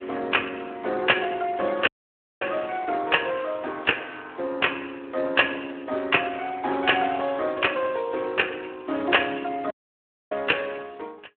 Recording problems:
telephone audio; 220 Hz to 3.4 kHz, Speex
audio cutting out; at 2 s for 0.5 s and at 9.5 s for 0.5 s

